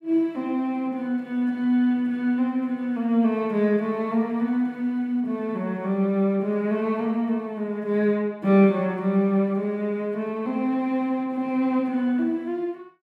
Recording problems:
none

